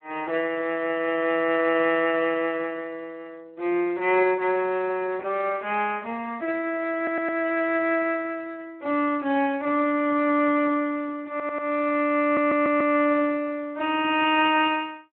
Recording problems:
telephone audio; 240 Hz to 3 kHz, Speex
stutter; at 7 s, at 11 s and at 12 s

